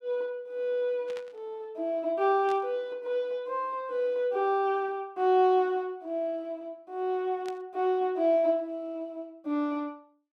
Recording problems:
burst of static; at 1 s, at 2.5 s and at 7.5 s; peak -12 dB vs average level

